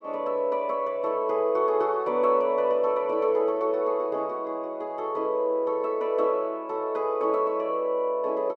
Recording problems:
none

